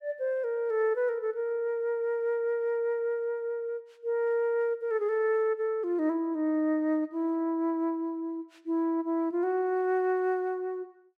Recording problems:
none

